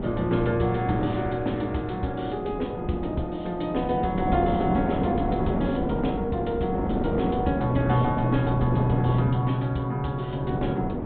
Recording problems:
treble cut off; nothing above 4 kHz
wind on the microphone; below 440 Hz, SNR 3 dB

